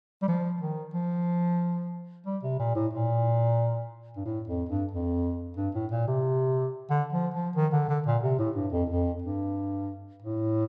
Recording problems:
none

